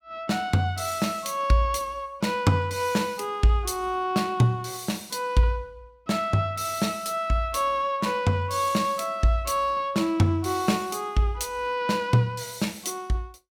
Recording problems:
none

